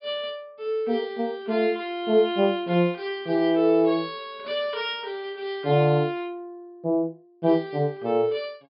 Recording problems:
treble cut off; nothing above 5.5 kHz

